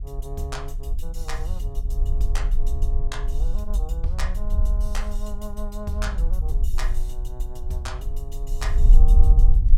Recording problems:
rumble; below 46 Hz, strongest tone 18 Hz, SNR -10 dB

